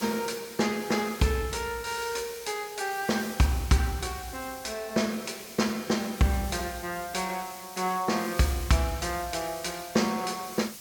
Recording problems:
background hiss; SNR 13 dB

